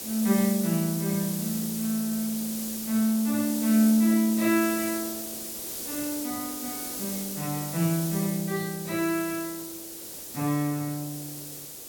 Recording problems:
background hiss; SNR 7 dB

